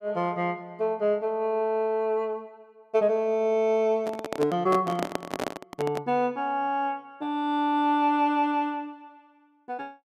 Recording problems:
microphone handling noise; from 4 to 6 s; peak +1 dB vs average level

